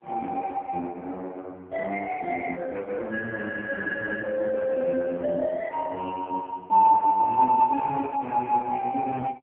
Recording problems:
telephone audio; 220 Hz to 2.6 kHz, AMR-NB

